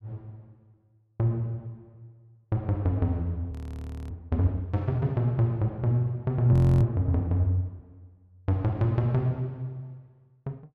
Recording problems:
frozen audio; at 3.5 s for 0.5 s and at 6.5 s

